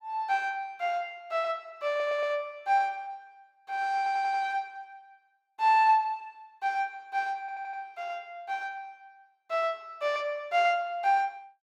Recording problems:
stutter; at 2 s, at 4 s and at 7.5 s

